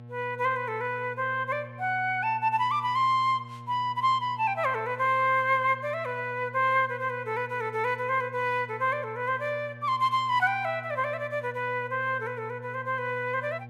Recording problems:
hum; 60 Hz, harmonics up to 1.1 kHz, SNR 17 dB

